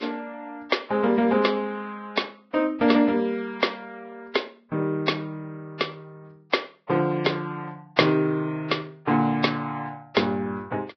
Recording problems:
lossy codec; Vorbis, log-spectral distance 3 dB, nothing above 5.5 kHz

